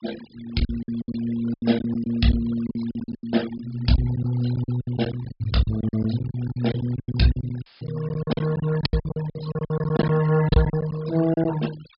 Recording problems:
treble missing; nothing above 5.5 kHz
noise reduction artefacts; signal-to-artefact ratio 16 dB
lost packets; 18% of the sound replaced, filled with silence
audio cutting out; at 7.5 s; filled with static

